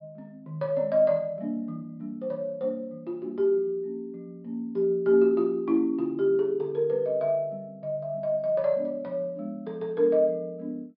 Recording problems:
treble cut off; nothing above 5.5 kHz

